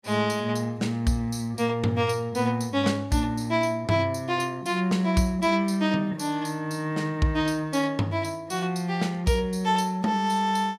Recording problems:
none

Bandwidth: 15 kHz